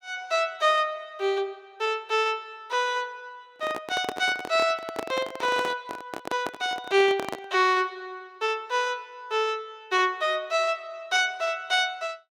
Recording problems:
handling noise; from 3.5 to 7.5 s; peak 0 dB vs average level

